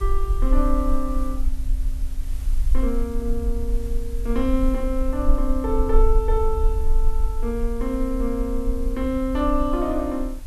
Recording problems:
background hiss; slope -2 dB per octave, SNR 22 dB
low-frequency rumble; below 42 Hz, strongest tone 22 Hz, SNR 1 dB

